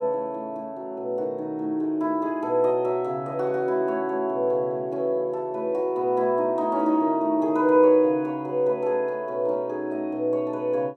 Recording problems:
none

